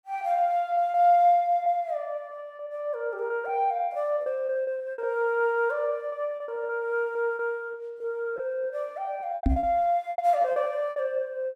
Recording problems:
packet loss; 10% of the sound replaced, filled with repeated pitch periods
microphone bump; at 9.5 s; peak +6 dB vs average level

